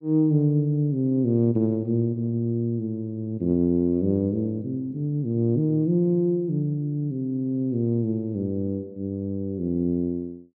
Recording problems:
none

